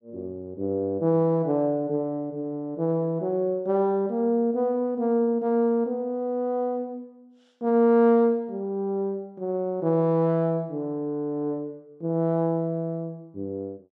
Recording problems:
none

